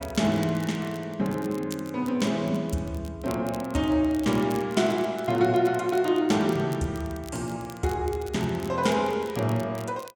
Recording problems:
crackle; vinyl, SNR 21 dB

